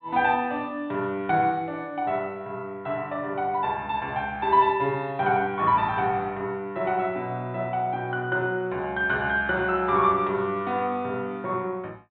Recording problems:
low-pass filter; nothing above 4 kHz

